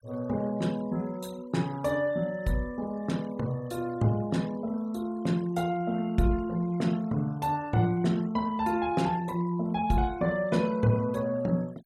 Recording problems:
denoising artefacts; signal-to-artefact ratio 24 dB

